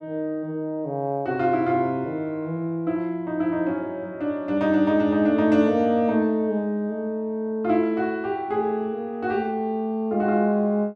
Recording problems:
none

